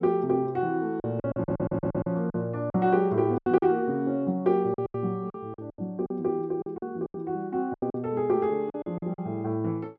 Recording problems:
packet loss; 12% of the sound replaced, filled with silence
stutter; at 1.5 s

